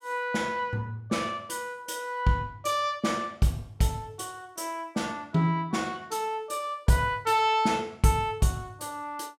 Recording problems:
none

